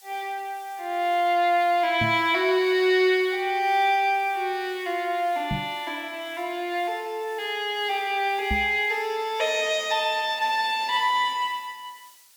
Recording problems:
hiss; slope +3 dB per octave, SNR 26 dB
microphone bump; at 2 s, at 5.5 s and at 8.5 s; peak -1 dB vs average level

